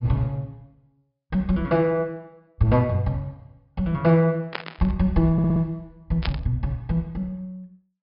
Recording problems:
low-pass filter; nothing above 5.5 kHz
burst of static; at 4.5 s and at 6 s; peak -1 dB vs average level
audio stuttering; at 5.5 s

